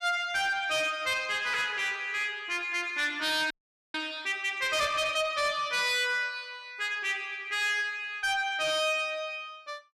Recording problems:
distortion; soft clipping, signal-to-distortion ratio 10 dB
frozen audio; at 3.5 s

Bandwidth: 13.5 kHz